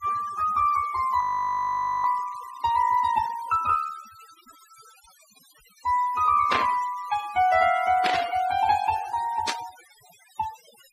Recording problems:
denoising artefacts; signal-to-artefact ratio 16 dB
audio freezing; at 1 s for 1 s
burst of static; at 6.5 s, at 8 s and at 9.5 s; peak +3 dB vs average level

